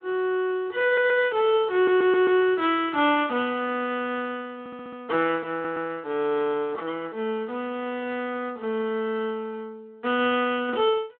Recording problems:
phone line; 220 Hz to 3.4 kHz, Speex
stutter; 4 times, first at 1 s

